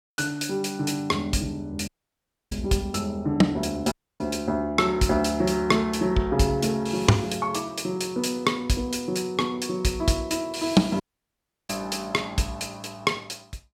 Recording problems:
dropout; at 2 s for 0.5 s, at 4 s and at 11 s for 0.5 s

